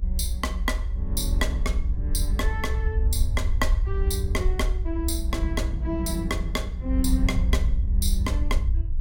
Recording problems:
low-frequency rumble; below 64 Hz, SNR -3 dB
wind on the microphone; below 150 Hz, SNR 13 dB

